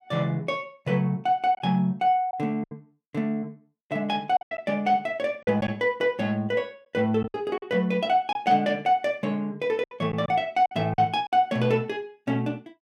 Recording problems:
lost packets; 6% of the sound replaced, filled with silence

